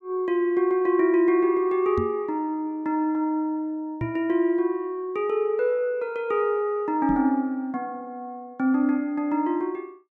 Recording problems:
microphone bump; at 2 s, at 4 s and at 7 s; peak -2 dB vs average level

